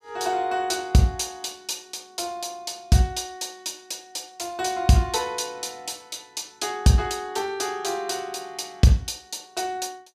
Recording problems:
none

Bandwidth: 15 kHz